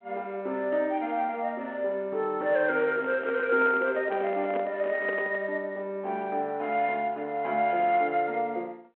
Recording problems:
phone line; 300 Hz to 3.5 kHz, G.726
handling noise; from 3 to 5.5 s; peak -3 dB vs average level

